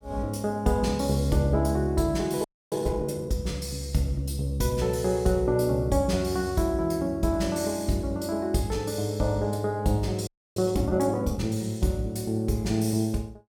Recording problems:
audio freezing; at 2.5 s and at 10 s

